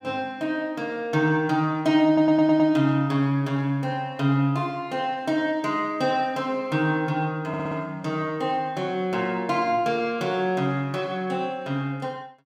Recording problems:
audio stuttering; at 2 s and at 7.5 s

